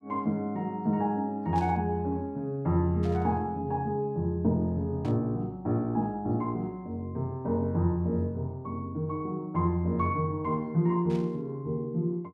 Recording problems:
burst of static; 4 times, first at 1.5 s; peak -14 dB vs average level

